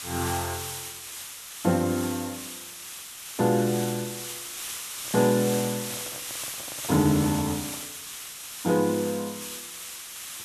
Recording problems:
hiss; slope +2 dB per octave, SNR 8 dB
microphone handling noise; from 5 to 8 s; peak -10 dB vs average level

